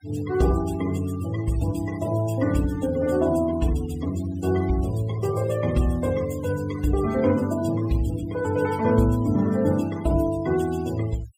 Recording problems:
noise reduction artefacts; signal-to-artefact ratio 18 dB

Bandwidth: 16 kHz